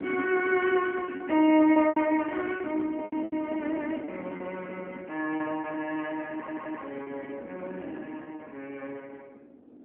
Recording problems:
phone line; 220 Hz to 3.2 kHz, AMR-NB
wind noise; below 390 Hz, SNR 13 dB
lost packets; 7% of the sound replaced, filled with repeated pitch periods
stutter; at 6.5 s

